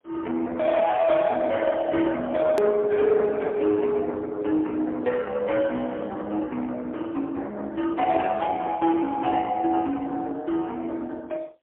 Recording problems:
phone line; 260 Hz to 3.4 kHz, AMR-NB, then MP3
distorted audio; soft clipping, signal-to-distortion ratio 13 dB
click at an edit; at 2.5 s

